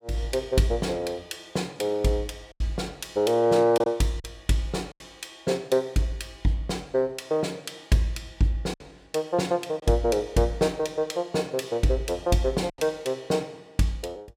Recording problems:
packet loss; 3% of the sound replaced, filled with silence

